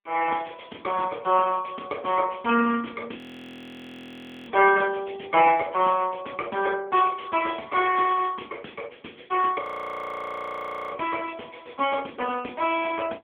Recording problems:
phone line; 190 Hz to 3.3 kHz, AMR-NB
frozen audio; at 3 s for 1.5 s and at 9.5 s for 1.5 s

